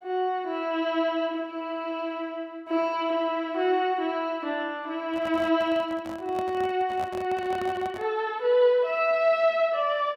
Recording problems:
handling noise; from 5 to 8 s; peak -7 dB vs average level

